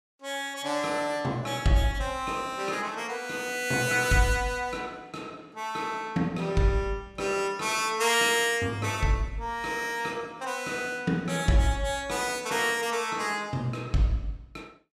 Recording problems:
none

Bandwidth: 14.5 kHz